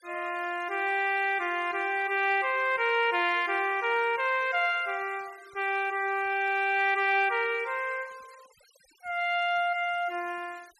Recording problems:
denoising artefacts; signal-to-artefact ratio 25 dB

